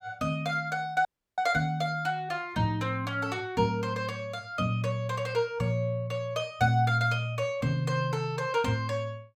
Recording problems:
audio cutting out; at 1 s

